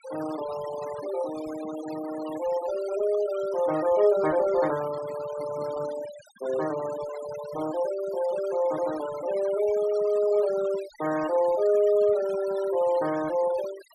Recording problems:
denoising artefacts; signal-to-artefact ratio 15 dB

